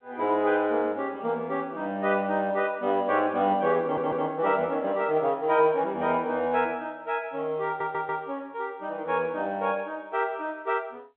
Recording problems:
telephone audio; 170 Hz to 3.7 kHz, G.711
audio stuttering; at 4 s and at 7.5 s

